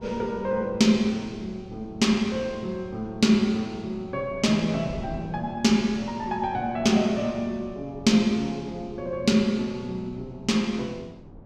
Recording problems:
wind on the microphone; below 290 Hz, SNR 19 dB

